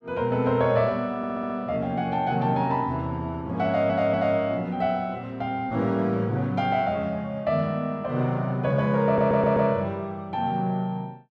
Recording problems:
audio stuttering; at 1 s, at 3.5 s and at 9 s

